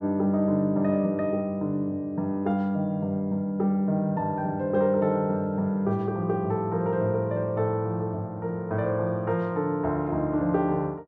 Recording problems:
none

